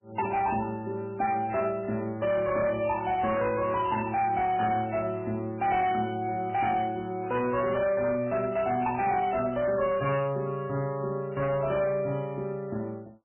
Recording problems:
codec artefacts; MP3, log-spectral distance 3 dB, nothing above 2.5 kHz
distortion; hard clipping, signal-to-distortion ratio 11 dB

